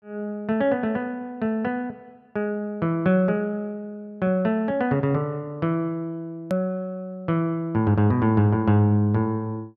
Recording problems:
click at an edit; at 6.5 s

